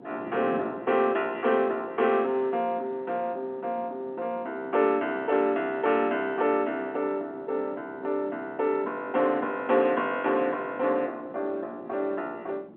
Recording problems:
telephone audio; 240 Hz to 3.3 kHz, G.711
wind noise; below 470 Hz, SNR 19 dB

